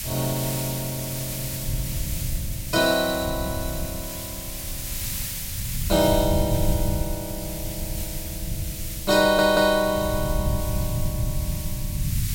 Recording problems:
hiss; slope +4 dB per octave, SNR 8 dB
low-frequency rumble; below 130 Hz, SNR 7 dB
stutter; at 9 s

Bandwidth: 16.5 kHz